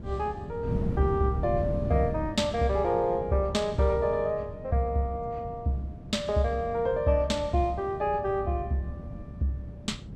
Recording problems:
wind on the microphone; below 210 Hz, SNR 9 dB

